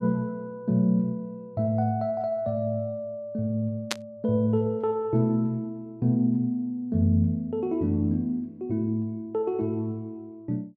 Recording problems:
static burst; at 4 s; peak +3 dB vs average level

